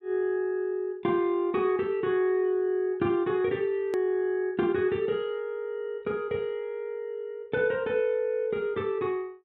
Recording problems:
click at an edit; at 4 s

